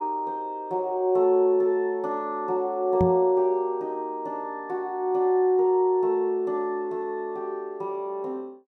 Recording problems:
microphone bump; at 3 s; peak +3 dB vs average level

